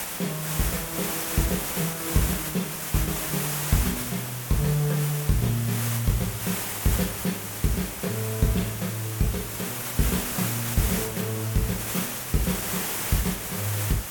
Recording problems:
background hiss; slope -2 dB per octave, SNR 1 dB

